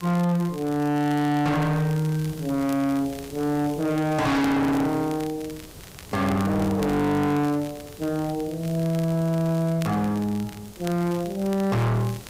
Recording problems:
distorted audio; hard clipping, signal-to-distortion ratio 6 dB
hiss; SNR 20 dB
crackling; vinyl, SNR 21 dB

